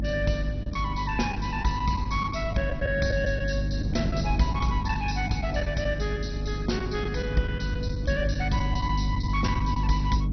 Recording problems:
codec artefacts; MP2, log-spectral distance 4 dB, nothing above 6 kHz
electrical hum; 50 Hz, harmonics up to 300 Hz, SNR 1 dB
wind noise; below 230 Hz, SNR 8 dB
packet loss; 5% of the sound replaced, filled with the last packet

